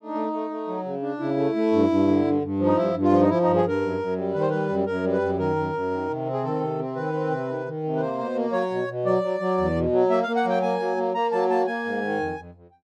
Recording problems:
none

